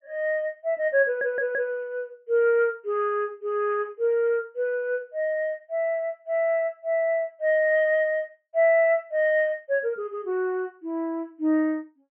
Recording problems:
low-pass filter; nothing above 3.1 kHz
audio stuttering; at 1 s

